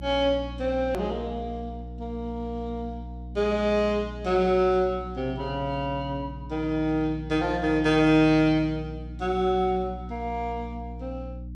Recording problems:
electrical hum; 60 Hz, harmonics up to 300 Hz, SNR 13 dB
edit click; at 1 s

